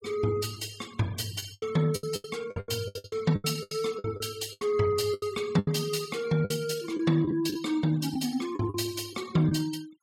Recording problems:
denoising artefacts; signal-to-artefact ratio 20 dB
packet loss; 13% of the sound replaced, filled with the last packet

